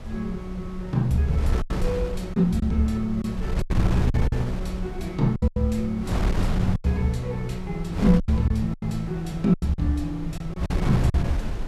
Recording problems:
wind noise; below 130 Hz, SNR 6 dB
packet loss; 8% of the sound replaced, filled with silence

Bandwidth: 14.5 kHz